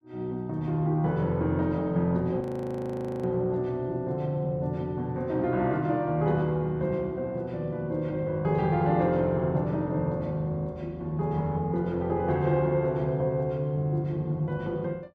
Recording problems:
frozen audio; at 2.5 s for 1 s

